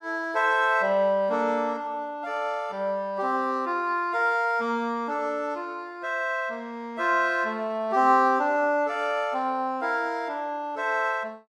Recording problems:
none

